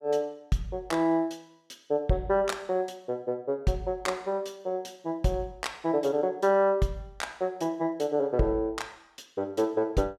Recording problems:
none

